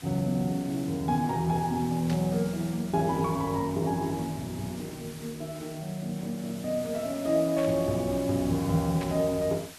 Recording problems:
background hiss; slope 0 dB per octave, SNR 16 dB
burst of static; at 2 s, at 7.5 s and at 9 s; peak -8 dB vs average level

